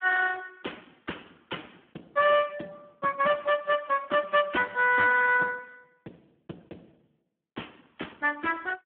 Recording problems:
telephone audio; 260 Hz to 3.3 kHz, Speex

